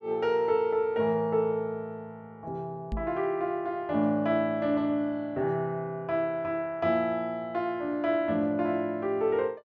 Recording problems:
microphone bump; at 3 s; peak -2 dB vs average level

